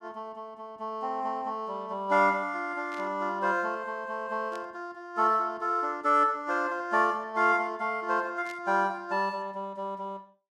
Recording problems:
burst of static; at 3 s, at 4.5 s and at 8.5 s; peak -14 dB vs average level

